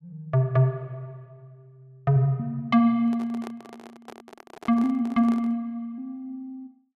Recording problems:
microphone handling noise; from 3 to 5.5 s; peak -11 dB vs average level

